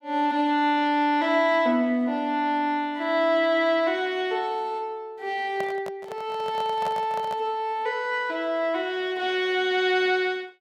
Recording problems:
microphone handling noise; from 5.5 to 7.5 s; peak -6 dB vs average level

